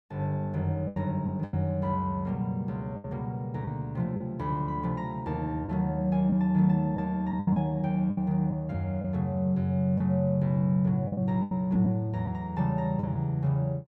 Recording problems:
packet loss; 6% of the sound replaced, filled with the last packet

